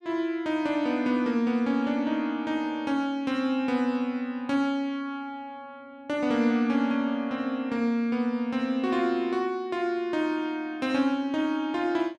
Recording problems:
none

